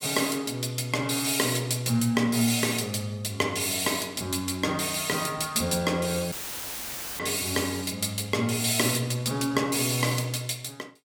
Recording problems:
dropout; at 6.5 s for 1 s; filled with static

